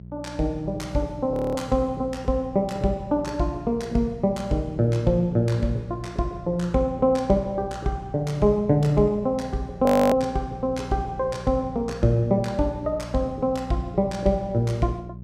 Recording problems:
electrical hum; 60 Hz, harmonics up to 420 Hz, SNR 15 dB
frozen audio; at 1.5 s and at 10 s

